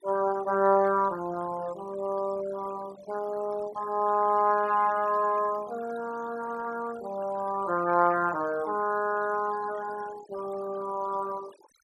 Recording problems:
noise reduction artefacts; signal-to-artefact ratio 18 dB

